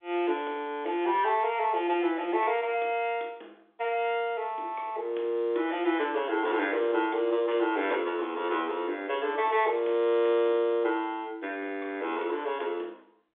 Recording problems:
phone line; 260 Hz to 3.6 kHz, G.711

